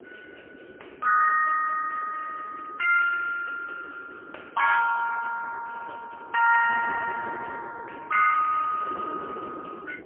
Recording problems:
phone line; 620 Hz to 2.2 kHz, AMR-NB, then MP3
wind on the microphone; below 510 Hz, SNR 18 dB

